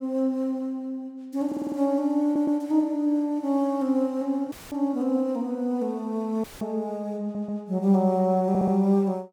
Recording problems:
audio stuttering; 4 times, first at 1.5 s
audio cutting out; at 4.5 s and at 6.5 s; filled with static

